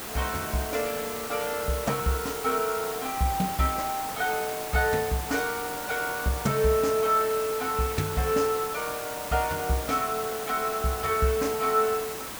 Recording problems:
hiss; slope -3 dB per octave, SNR 7 dB

